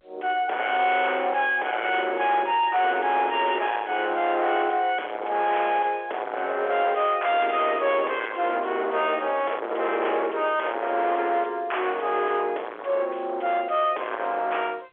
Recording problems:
telephone audio; 340 Hz to 3.5 kHz, G.711
distorted audio; soft clipping, signal-to-distortion ratio 7 dB

